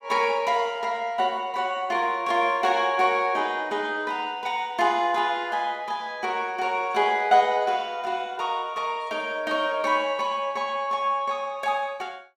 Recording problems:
none

